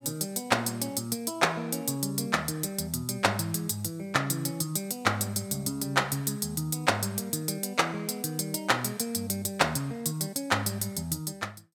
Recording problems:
none

